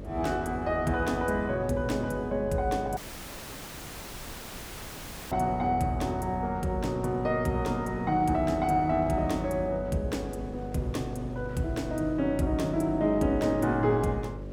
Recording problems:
electrical hum; 50 Hz, harmonics up to 600 Hz, SNR 12 dB
wind on the microphone; below 540 Hz, SNR 22 dB
audio cutting out; at 3 s for 2.5 s

